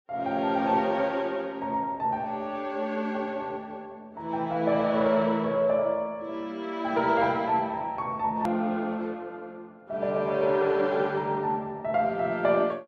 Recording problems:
hard cut with a click; at 8.5 s

